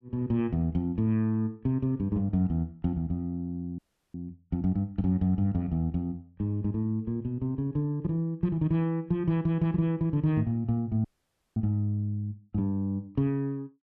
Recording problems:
audio freezing; at 4 s and at 11 s for 0.5 s

